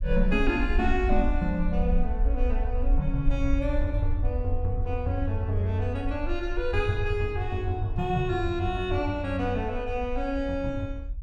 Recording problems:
low-frequency rumble; below 52 Hz, SNR 4 dB

